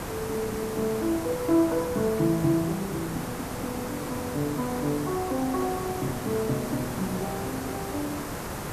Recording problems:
hiss; slope -6 dB per octave, SNR 5 dB

